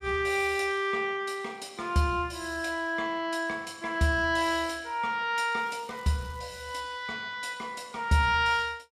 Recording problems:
crackling; from 5.5 to 6.5 s; loose cable, SNR 29 dB

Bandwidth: 14.5 kHz